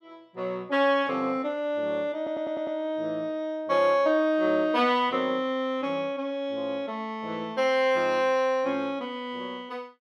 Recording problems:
stutter; at 2 s

